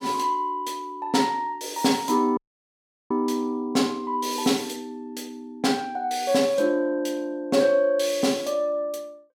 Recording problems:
audio cutting out; at 2.5 s for 0.5 s

